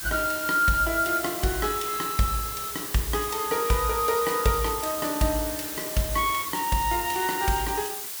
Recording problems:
hiss; slope +2 dB per octave, SNR 6 dB

